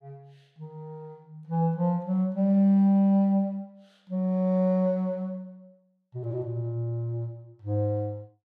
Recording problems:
none

